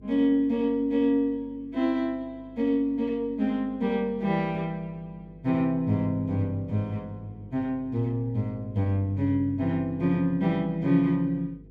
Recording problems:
hum; 50 Hz, harmonics up to 500 Hz, SNR 24 dB

